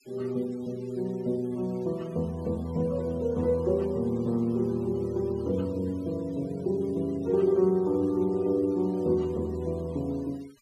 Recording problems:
denoising artefacts; signal-to-artefact ratio 27 dB

